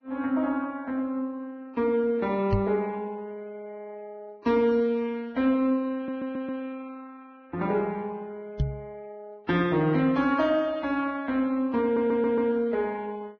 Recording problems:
lossy compression; Vorbis, log-spectral distance 2 dB, nothing above 6 kHz
knock on the microphone; at 2.5 s and at 8.5 s; peak +4 dB vs average level
audio stuttering; at 6 s and at 12 s

